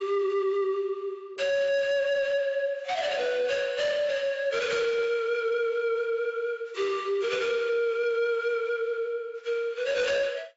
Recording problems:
lossy compression; AAC, log-spectral distance 2 dB, nothing above 7.6 kHz
distortion; soft clipping, signal-to-distortion ratio 10 dB

